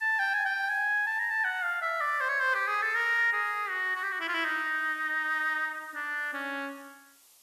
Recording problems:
hiss; SNR 29 dB

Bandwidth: 14 kHz